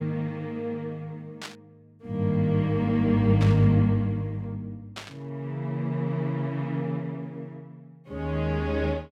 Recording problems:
burst of static; at 1.5 s, at 3.5 s and at 5 s; peak -6 dB vs average level

